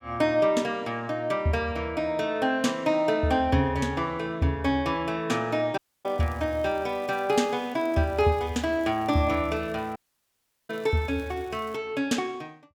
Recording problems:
dropout; at 6 s and at 10 s for 0.5 s
crackling; from 6 to 12 s; loose cable, SNR 28 dB

